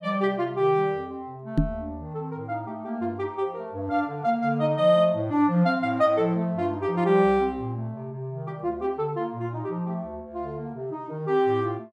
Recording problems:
knock on the microphone; at 1.5 s; peak +8 dB vs average level

